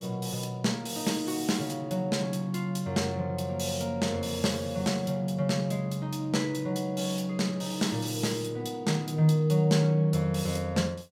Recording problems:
none

